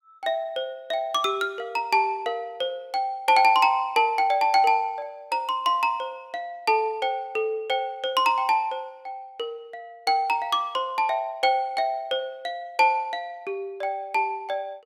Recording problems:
none

